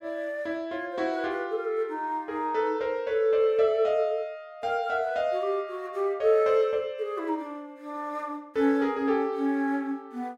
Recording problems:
none

